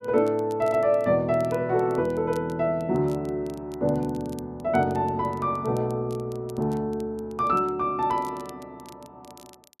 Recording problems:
crackle; vinyl, SNR 27 dB

